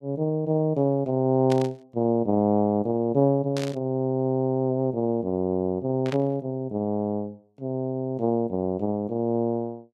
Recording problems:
static burst; at 1.5 s, at 3.5 s and at 6 s; peak -6 dB vs average level

